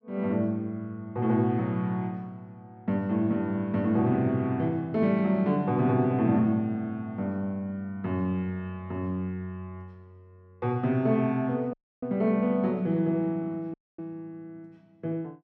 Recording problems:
dropout; at 12 s and at 14 s

